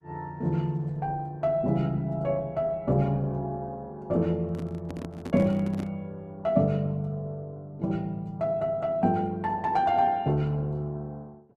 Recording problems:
lossy codec; Opus, log-spectral distance 2 dB
microphone handling noise; from 4.5 to 6 s; peak -4 dB vs average level

